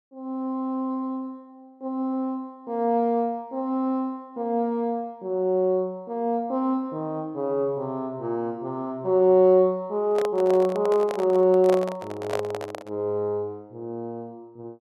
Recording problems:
microphone handling noise; from 10 to 13 s; peak 0 dB vs average level

